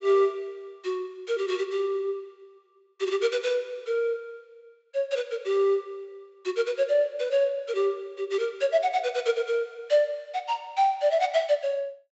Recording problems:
treble missing; nothing above 7.7 kHz

